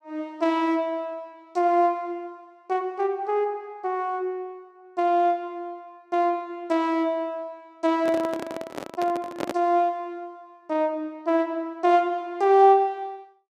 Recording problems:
handling noise; from 8 to 9.5 s; peak -1 dB vs average level

